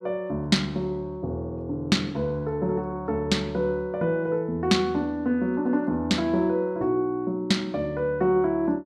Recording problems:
none

